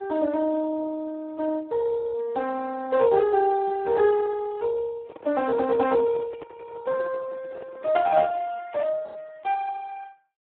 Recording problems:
telephone audio; 280 Hz to 2.1 kHz, Speex
microphone handling noise; from 5 to 8.5 s; peak -9 dB vs average level

